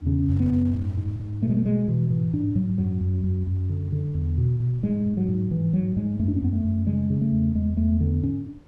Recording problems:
wind on the microphone; below 210 Hz, SNR 25 dB

